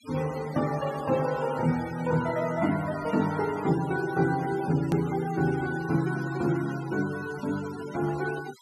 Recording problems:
denoising artefacts; signal-to-artefact ratio 15 dB
click at an edit; at 5 s

